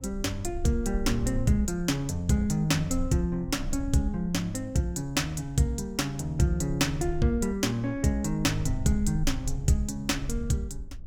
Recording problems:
low-frequency rumble; below 54 Hz, strongest tone 24 Hz, SNR 11 dB

